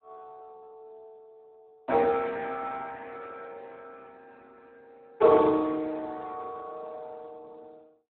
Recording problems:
phone line; 240 Hz to 2.2 kHz, Speex

